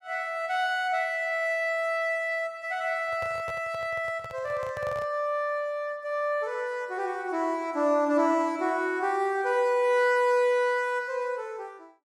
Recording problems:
handling noise; from 3 to 5 s; peak -10 dB vs average level

